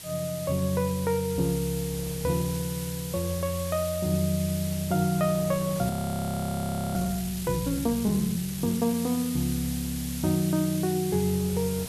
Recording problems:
background hiss; SNR 10 dB
wind on the microphone; below 610 Hz, SNR 22 dB
audio freezing; at 6 s for 1 s

